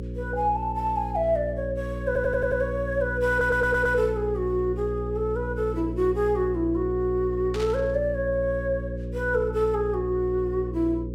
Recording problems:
electrical hum; 60 Hz, harmonics up to 540 Hz, SNR 7 dB
audio stuttering; at 2 s and at 3.5 s
burst of static; at 7.5 s; peak -8 dB vs average level

